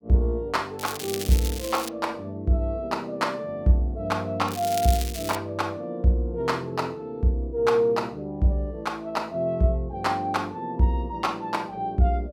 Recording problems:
crackle; from 1 to 2 s and at 4.5 s; loose cable, SNR 9 dB

